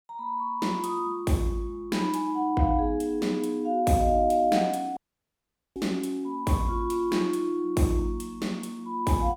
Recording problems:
dropout; at 5 s for 1 s

